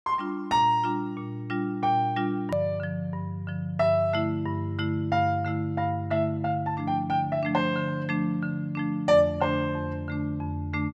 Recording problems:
click at an edit; at 2.5 s

